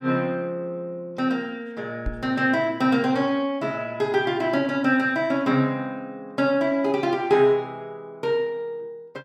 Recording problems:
microphone bump; at 2 s; peak -3 dB vs average level

